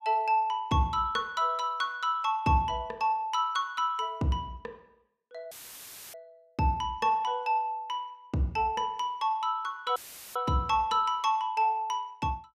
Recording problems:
audio cutting out; at 5.5 s for 0.5 s and at 10 s; filled with static

